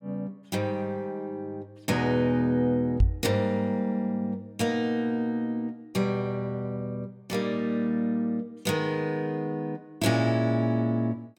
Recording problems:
microphone bump; at 3 s; peak +9 dB vs average level

